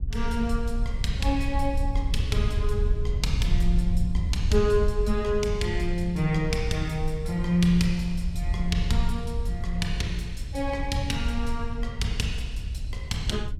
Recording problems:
rumble; below 72 Hz, SNR 2 dB

